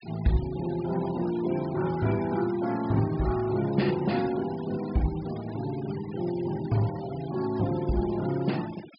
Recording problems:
treble missing; nothing above 5.5 kHz
denoising artefacts; signal-to-artefact ratio 17 dB

